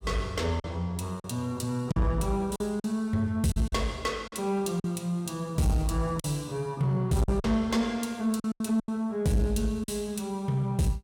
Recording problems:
distortion; soft clipping, signal-to-distortion ratio 12 dB
packet loss; 7% of the sound replaced, filled with silence

